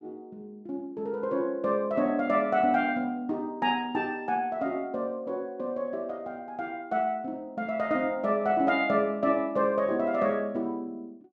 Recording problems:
none

